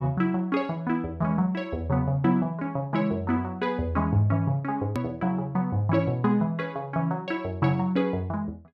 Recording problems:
edit click; at 5 s

